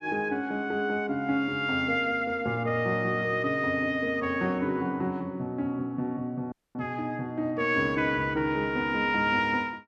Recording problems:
audio cutting out; at 6.5 s

